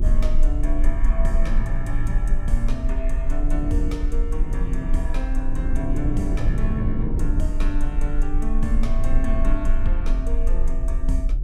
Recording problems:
rumble; below 40 Hz, strongest tone 20 Hz, SNR -5 dB
wind noise; below 190 Hz, SNR 3 dB

